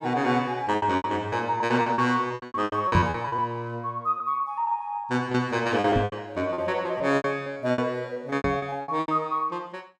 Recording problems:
lost packets; 16% of the sound replaced, filled with repeated pitch periods
microphone bump; at 3 s, at 6 s and at 8.5 s; peak +6 dB vs average level

